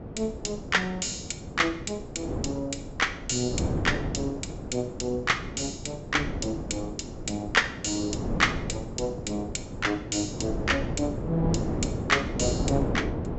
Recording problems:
low-pass filter; nothing above 7.8 kHz
wind noise; below 390 Hz, SNR 5 dB

